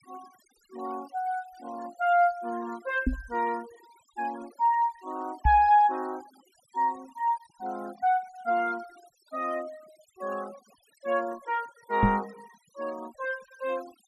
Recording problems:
noise reduction artefacts; signal-to-artefact ratio 23 dB
microphone thump; at 3 s, at 5.5 s and at 12 s; peak +8 dB vs average level

